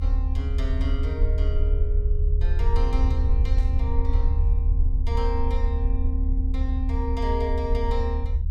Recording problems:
rumble; below 72 Hz, SNR -8 dB
static burst; at 3.5 s; peak -13 dB vs average level

